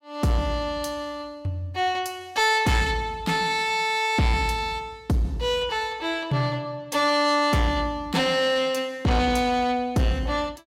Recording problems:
distortion; soft clipping, signal-to-distortion ratio 12 dB

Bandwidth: 16 kHz